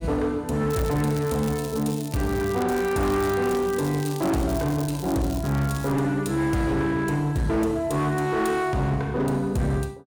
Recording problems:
distortion; hard clipping, signal-to-distortion ratio 10 dB
crackle; from 0.5 to 6 s; loose cable, SNR 15 dB

